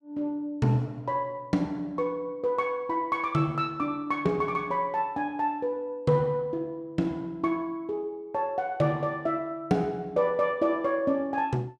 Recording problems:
none

